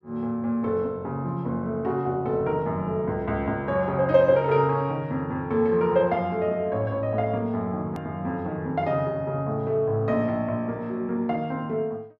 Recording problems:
hard cut with a click; at 8 s

